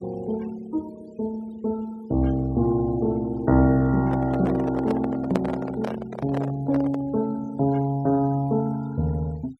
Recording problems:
denoising artefacts; signal-to-artefact ratio 23 dB
handling noise; from 4 to 7 s; peak +1 dB vs average level

